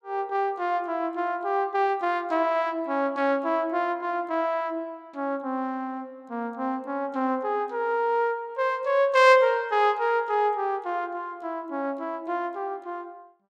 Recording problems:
none

